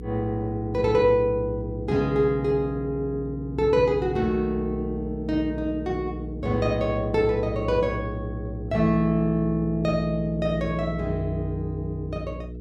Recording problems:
hum; 60 Hz, harmonics up to 480 Hz, SNR 10 dB

